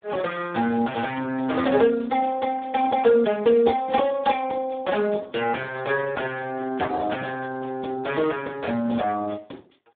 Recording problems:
telephone audio; 170 Hz to 3.6 kHz, Speex

